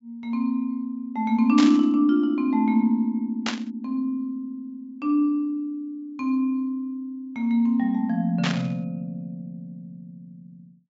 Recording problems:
treble missing; nothing above 8 kHz
static burst; at 1.5 s, at 3.5 s and at 8.5 s; peak +1 dB vs average level

